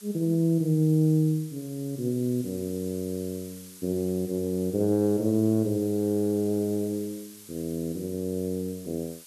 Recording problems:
background hiss; slope +2 dB per octave, SNR 19 dB

